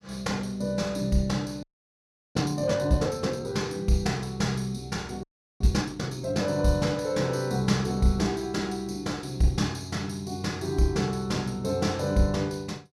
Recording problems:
audio freezing; at 1.5 s for 0.5 s and at 5 s

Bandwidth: 14.5 kHz